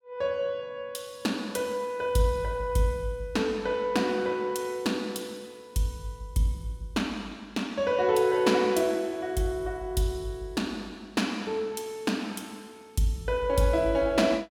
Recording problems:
none

